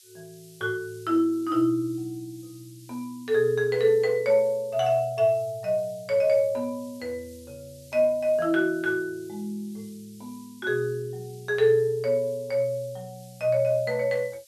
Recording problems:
background hiss; SNR 26 dB

